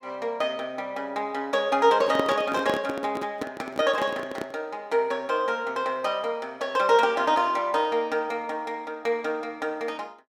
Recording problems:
handling noise; from 2 to 4.5 s; peak +2 dB vs average level

